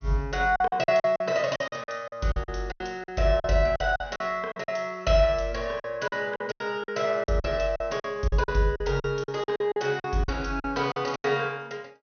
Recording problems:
low-pass filter; nothing above 6.3 kHz
lost packets; 15% of the sound replaced, filled with silence

